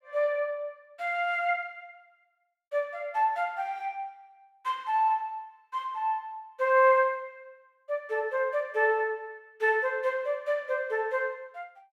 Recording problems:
none

